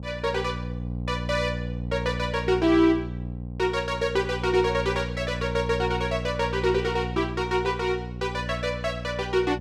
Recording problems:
hum; 60 Hz, harmonics up to 540 Hz, SNR 7 dB

